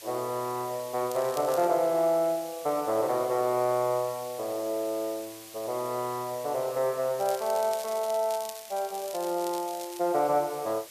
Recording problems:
background hiss; slope +3 dB per octave, SNR 16 dB
crackling; at 1 s and from 7 to 10 s; loose cable, SNR 15 dB

